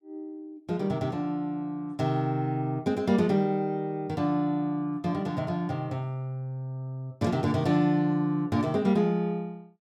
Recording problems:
none

